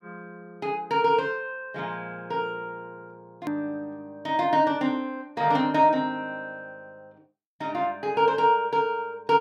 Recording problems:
edit click; at 3.5 s

